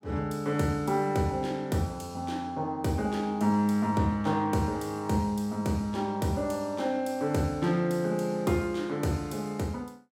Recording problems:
none

